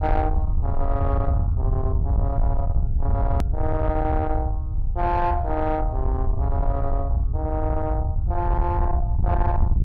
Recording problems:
distorted audio; soft clipping, signal-to-distortion ratio 11 dB
low-frequency rumble; below 88 Hz, SNR -3 dB
hard cut with a click; at 3.5 s

